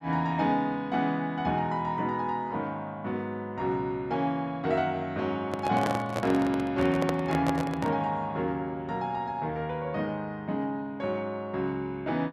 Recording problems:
handling noise; from 5.5 to 8 s; peak +3 dB vs average level

